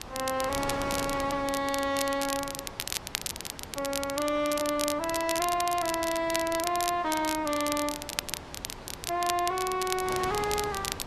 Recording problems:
codec artefacts; AAC, log-spectral distance 3 dB, nothing above 13.1 kHz
distorted audio; soft clipping, signal-to-distortion ratio 12 dB
wind on the microphone; below 1.6 kHz, SNR 12 dB
crackling; vinyl, SNR 6 dB

